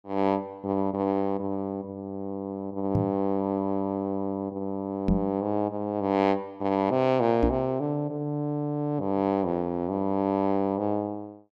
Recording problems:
microphone thump; at 3 s, at 5 s and at 7.5 s; peak +6 dB vs average level

